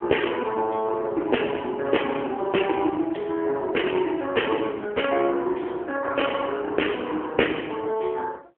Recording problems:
telephone audio; 280 Hz to 3 kHz, AMR-NB

